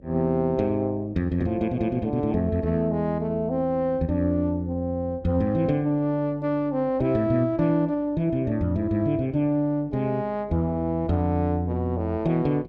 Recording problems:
hum; 50 Hz, harmonics up to 550 Hz, SNR 26 dB

